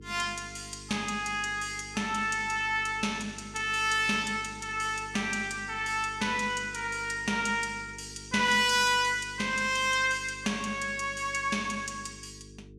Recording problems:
hum; 50 Hz, harmonics up to 450 Hz, SNR 20 dB

